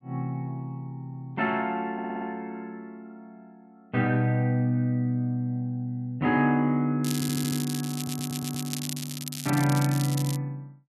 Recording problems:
audio stuttering; at 2 s, at 7 s and at 8 s
crackling; from 7 to 10 s; loose cable, SNR 8 dB

